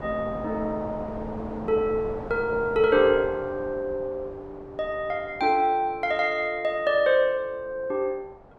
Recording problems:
wind noise; below 790 Hz, SNR 14 dB

